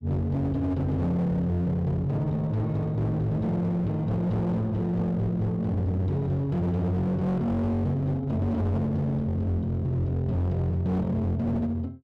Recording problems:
distortion; hard clipping, uneven, signal-to-distortion ratio 7 dB

